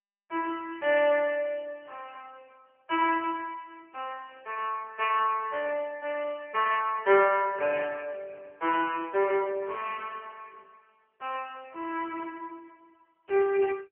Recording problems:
telephone audio; 300 Hz to 2.9 kHz, AMR-NB

